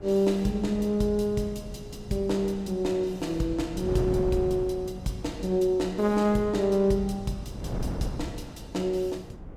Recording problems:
wind on the microphone; below 320 Hz, SNR 12 dB

